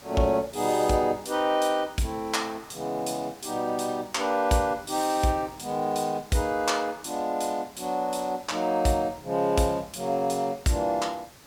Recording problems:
background hiss; slope -3 dB per octave, SNR 22 dB

